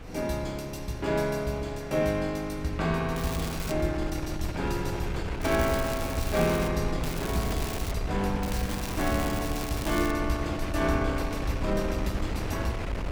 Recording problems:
wind noise; below 330 Hz, SNR 5 dB
crackling; 4 times, first at 3 s; loose cable, SNR 10 dB

